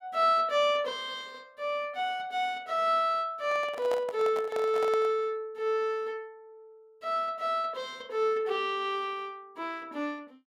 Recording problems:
microphone handling noise; from 3.5 to 5 s; peak -4 dB vs average level

